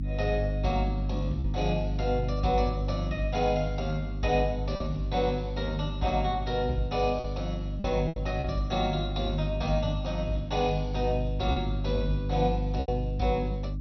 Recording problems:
lossy codec; MP2, log-spectral distance 2 dB, nothing above 5.8 kHz
hum; 50 Hz, harmonics up to 300 Hz, SNR 2 dB
lost packets; 3% of the sound replaced, filled with repeated pitch periods

